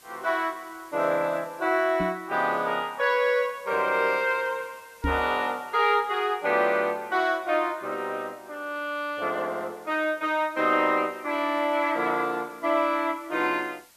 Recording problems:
background hiss; slope 0 dB per octave, SNR 28 dB
microphone thump; at 2 s and at 5 s; peak 0 dB vs average level

